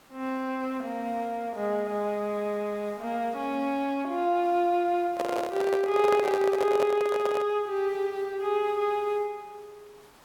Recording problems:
background hiss; SNR 25 dB
microphone handling noise; from 5 to 7.5 s; peak +1 dB vs average level

